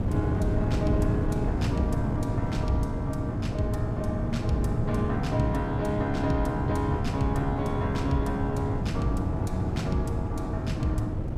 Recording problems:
wind on the microphone; below 220 Hz, SNR -1 dB

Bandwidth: 15.5 kHz